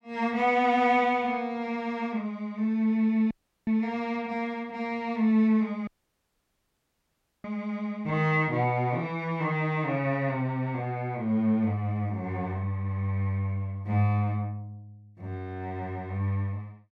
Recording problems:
dropout; at 3.5 s and at 6 s for 1.5 s

